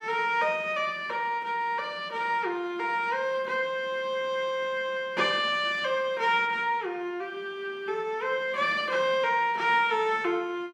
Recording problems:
none

